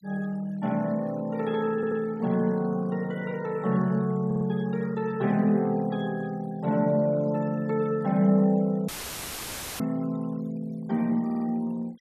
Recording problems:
noise reduction artefacts; signal-to-artefact ratio 25 dB
audio stuttering; at 2 s, at 4.5 s and at 11 s
dropout; at 9 s for 1 s; filled with static

